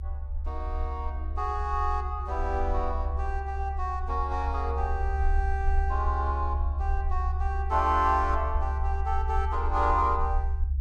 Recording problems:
rumble; below 70 Hz, strongest tone 70 Hz, SNR 1 dB

